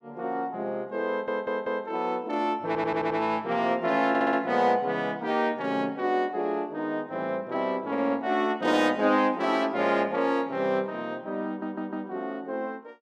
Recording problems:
audio stuttering; 4 times, first at 1 s

